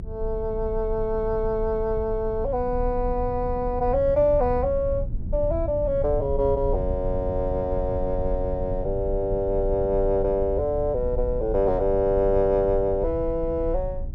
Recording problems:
rumble; below 84 Hz, strongest tone 28 Hz, SNR 8 dB

